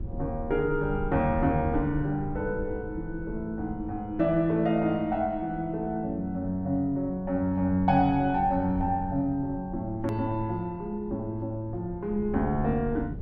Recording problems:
low-frequency rumble; below 110 Hz, SNR 13 dB
hard cut with a click; at 10 s

